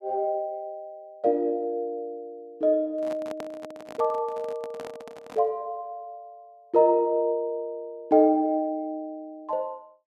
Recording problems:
handling noise; from 3 to 5.5 s; peak -8 dB vs average level

